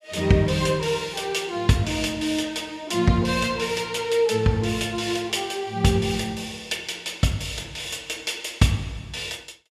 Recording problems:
none

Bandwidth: 14.5 kHz